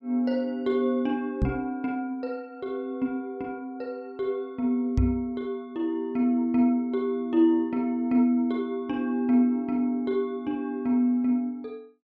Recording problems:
microphone thump; at 1.5 s and at 5 s; peak +5 dB vs average level

